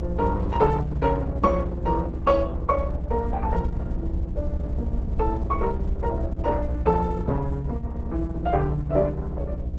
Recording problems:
lossy compression; Opus, log-spectral distance 2 dB, nothing above 7.3 kHz
mains hum; 60 Hz, harmonics up to 660 Hz, SNR 6 dB
low-frequency rumble; below 74 Hz, SNR 7 dB

